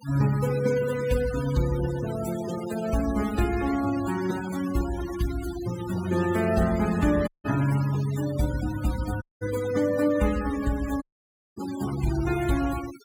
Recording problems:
denoising artefacts; signal-to-artefact ratio 13 dB
dropout; at 7.5 s, at 9 s and at 11 s for 0.5 s

